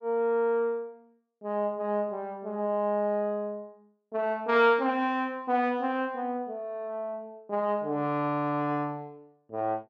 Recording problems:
none

